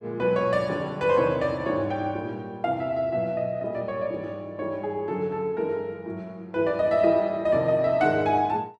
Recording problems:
none

